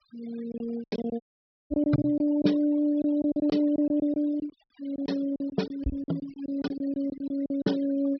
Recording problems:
treble cut off; nothing above 5.5 kHz
noise reduction artefacts; signal-to-artefact ratio 18 dB
lost packets; 14% of the sound replaced, filled with silence
audio cutting out; at 1 s for 0.5 s

